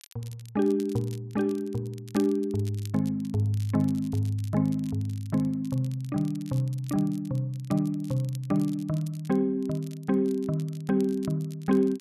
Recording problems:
crackle; vinyl, SNR 23 dB

